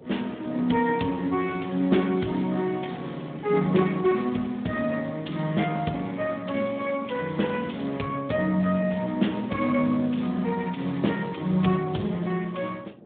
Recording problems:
phone line; 110 Hz to 3.6 kHz, Speex
wind on the microphone; below 430 Hz, SNR 21 dB

